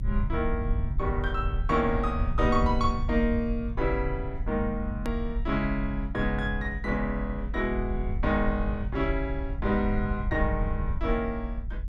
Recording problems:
low-frequency rumble; below 76 Hz, SNR 3 dB
edit click; at 5 s

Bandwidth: 13.5 kHz